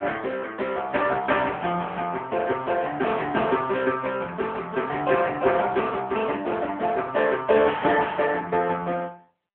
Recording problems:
telephone audio; 260 Hz to 3.4 kHz, AMR-NB

